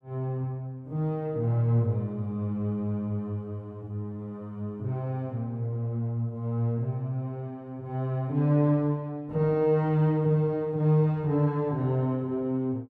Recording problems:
none

